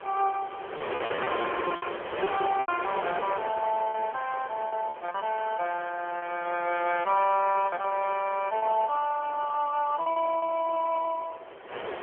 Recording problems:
telephone audio; 340 Hz to 3.3 kHz, AMR-NB
wind on the microphone; below 1.6 kHz, SNR 8 dB
lost packets; 8% of the sound replaced, filled with repeated pitch periods

